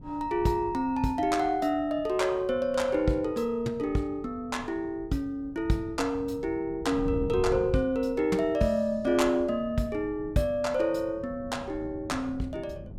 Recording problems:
wind noise; below 210 Hz, SNR 16 dB

